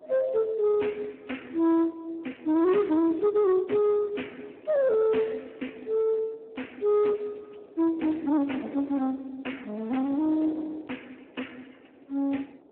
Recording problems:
telephone audio; 240 Hz to 2.8 kHz, Speex
distortion; soft clipping, signal-to-distortion ratio 11 dB
wind on the microphone; below 590 Hz, SNR 23 dB

